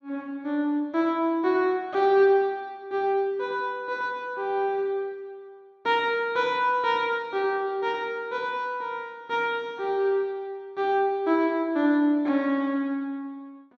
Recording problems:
none

